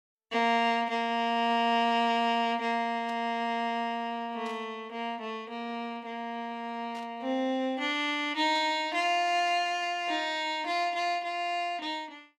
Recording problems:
static burst; 4 times, first at 3 s; peak -15 dB vs average level

